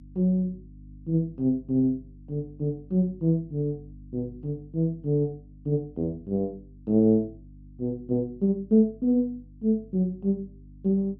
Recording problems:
hum; 50 Hz, harmonics up to 300 Hz, SNR 22 dB

